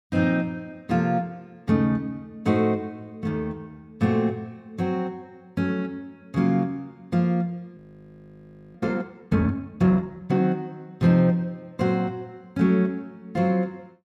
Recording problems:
frozen audio; at 8 s for 1 s

